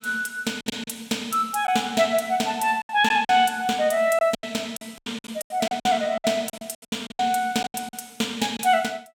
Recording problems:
packet loss; 13% of the sound replaced, filled with silence

